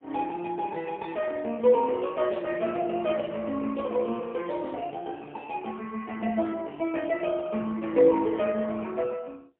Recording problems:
telephone audio; 240 Hz to 3.1 kHz, AMR-NB, then MP3

